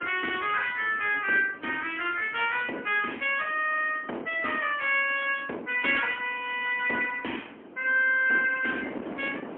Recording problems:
telephone audio; 220 Hz to 3.3 kHz, AMR-NB, then MP3
wind noise; below 640 Hz, SNR 18 dB

